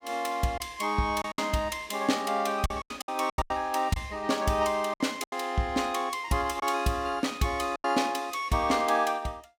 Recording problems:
lost packets; 7% of the sound replaced, filled with silence

